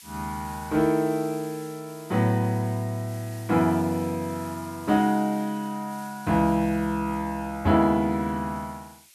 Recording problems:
background hiss; slope +4 dB per octave, SNR 21 dB

